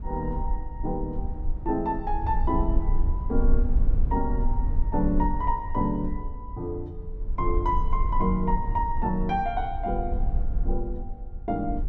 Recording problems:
low-frequency rumble; below 50 Hz, strongest tone 22 Hz, SNR 1 dB

